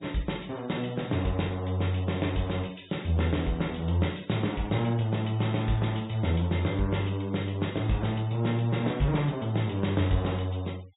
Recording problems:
treble cut off; nothing above 4 kHz
denoising artefacts; signal-to-artefact ratio 24 dB

